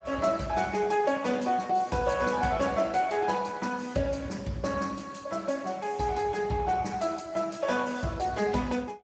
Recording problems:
lossy compression; Speex, log-spectral distance 5 dB, nothing above 7.6 kHz

